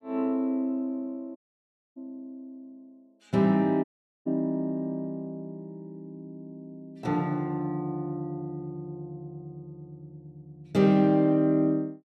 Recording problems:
audio cutting out; at 1.5 s for 0.5 s and at 4 s

